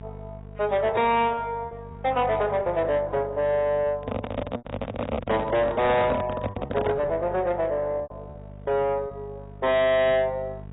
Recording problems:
lossy compression; AAC, log-spectral distance 2 dB, nothing above 3.8 kHz
distorted audio; soft clipping, signal-to-distortion ratio 7 dB
hum; 50 Hz, harmonics up to 900 Hz, SNR 17 dB
lost packets; 4% of the sound replaced, filled with repeated pitch periods
handling noise; from 4 to 7 s; peak +1 dB vs average level

